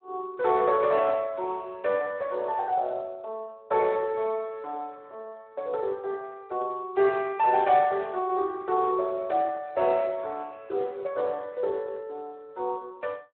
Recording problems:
telephone audio; 320 Hz to 3 kHz, Speex

